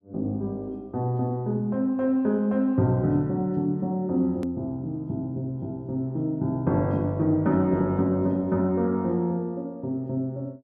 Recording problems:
hard cut with a click; at 4.5 s

